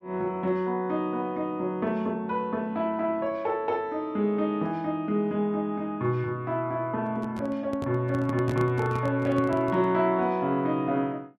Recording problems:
microphone handling noise; from 7 to 10 s; peak -1 dB vs average level

